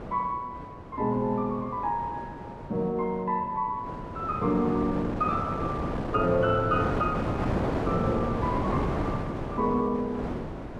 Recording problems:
wind noise; below 660 Hz, SNR 3 dB

